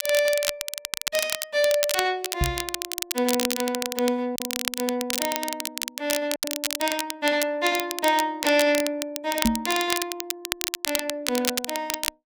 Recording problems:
crackle; vinyl, SNR 3 dB
lost packets; 1.1% of the sound replaced, filled with silence
microphone thump; at 2.5 s and at 9.5 s; peak +7 dB vs average level

